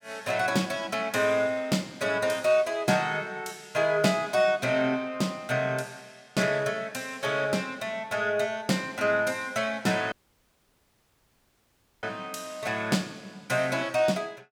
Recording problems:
audio cutting out; at 10 s for 2 s

